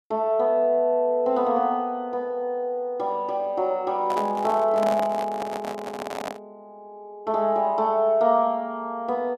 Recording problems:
handling noise; from 4 to 6.5 s; peak -3 dB vs average level

